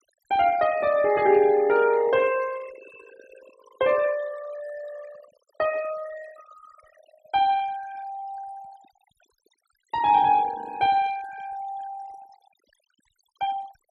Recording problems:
noise reduction artefacts; signal-to-artefact ratio 19 dB

